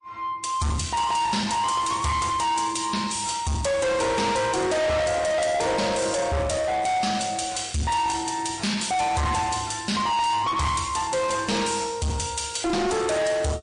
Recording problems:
codec artefacts; MP3, log-spectral distance 5 dB, nothing above 9.5 kHz
distorted audio; soft clipping, signal-to-distortion ratio 6 dB
crackle; from 0.5 to 2 s and from 6.5 to 8 s; loose cable, SNR 22 dB

